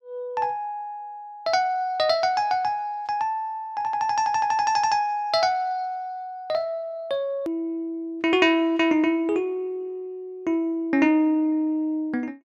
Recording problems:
click at an edit; at 7.5 s

